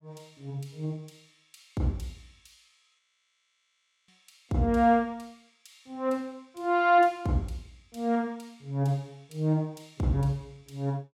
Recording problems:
audio freezing; at 3 s for 1 s

